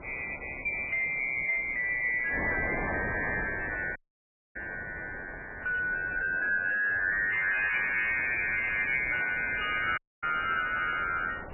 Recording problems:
lossy compression; MP3, log-spectral distance 7 dB, nothing above 2.4 kHz
distortion; hard clipping, signal-to-distortion ratio 10 dB
wind on the microphone; below 1.1 kHz, SNR 13 dB
audio cutting out; at 4 s for 0.5 s and at 10 s

